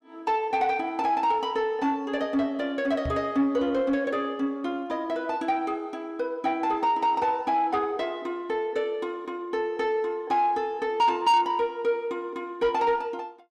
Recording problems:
distortion; soft clipping, signal-to-distortion ratio 12 dB
microphone thump; at 3 s; peak -3 dB vs average level

